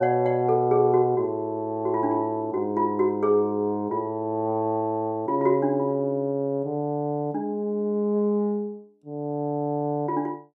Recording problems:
none

